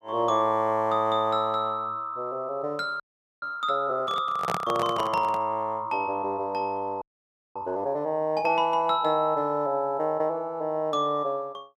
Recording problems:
frozen audio; at 3 s and at 7 s for 0.5 s
handling noise; from 4 to 5.5 s; peak +1 dB vs average level

